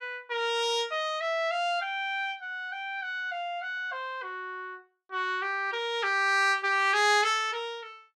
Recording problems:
none

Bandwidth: 15 kHz